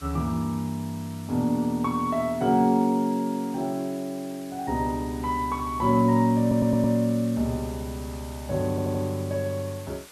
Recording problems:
hiss; slope -1 dB per octave, SNR 20 dB
stutter; at 6.5 s and at 8.5 s

